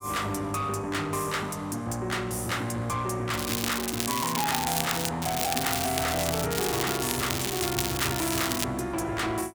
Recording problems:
distortion; soft clipping, signal-to-distortion ratio 11 dB
crackling; from 3.5 to 5 s, from 5 to 6.5 s and from 6.5 to 8.5 s; loose cable, SNR 1 dB

